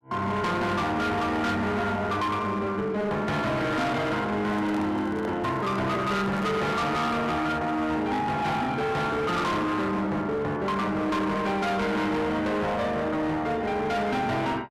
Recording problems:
distorted audio; hard clipping, signal-to-distortion ratio 8 dB
handling noise; from 4.5 to 6.5 s; peak -6 dB vs average level

